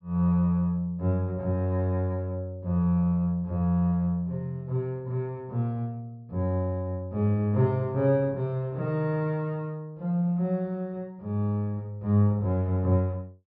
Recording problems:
treble missing; nothing above 5.5 kHz

